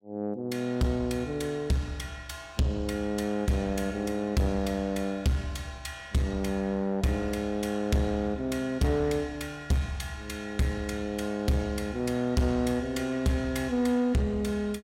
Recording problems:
distortion; soft clipping, signal-to-distortion ratio 11 dB

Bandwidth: 16 kHz